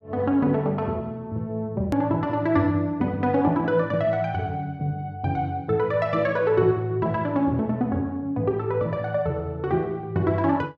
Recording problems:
edit click; at 2 s

